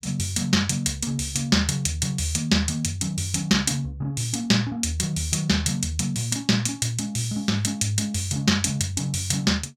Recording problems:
none

